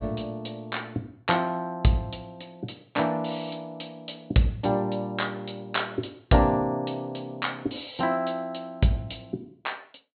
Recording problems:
treble missing; nothing above 4.3 kHz

